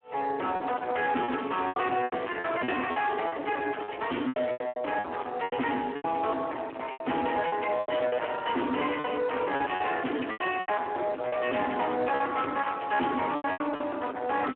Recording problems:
telephone audio; 240 Hz to 3.2 kHz, Speex
distortion; hard clipping, uneven, signal-to-distortion ratio 6 dB
packet loss; 12% of the sound replaced, filled with repeated pitch periods

